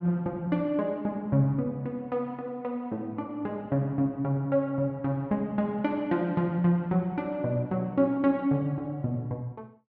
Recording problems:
none

